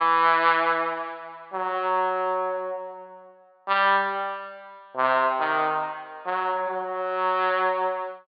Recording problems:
treble cut off; nothing above 4.9 kHz

